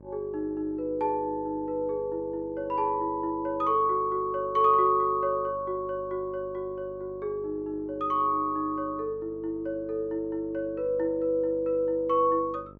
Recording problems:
hum; 50 Hz, harmonics up to 1.1 kHz, SNR 21 dB

